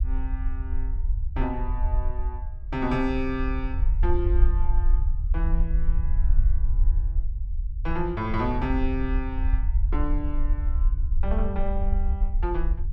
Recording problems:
low-frequency rumble; below 56 Hz, SNR -4 dB

